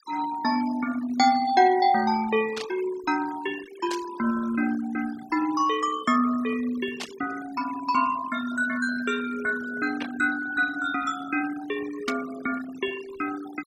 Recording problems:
noise reduction artefacts; signal-to-artefact ratio 16 dB
burst of static; 5 times, first at 2.5 s; peak -2 dB vs average level

